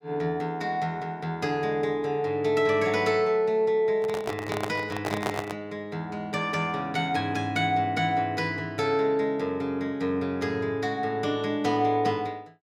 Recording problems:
microphone handling noise; from 4 to 5.5 s; peak +2 dB vs average level

